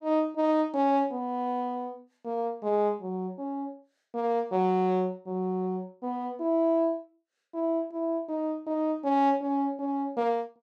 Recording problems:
none

